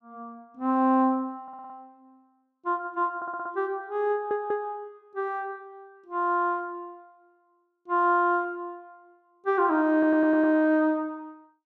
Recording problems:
stutter; 4 times, first at 1.5 s

